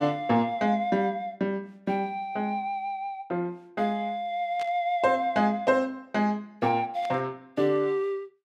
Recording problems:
static burst; at 4.5 s and at 7 s; peak -10 dB vs average level

